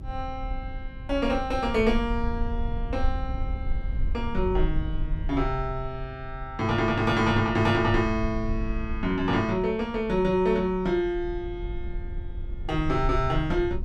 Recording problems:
rumble; below 62 Hz, SNR 8 dB

